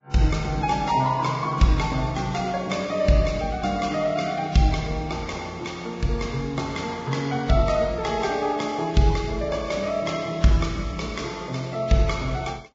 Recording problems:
lossy codec; Vorbis, log-spectral distance 4 dB, nothing above 7.3 kHz

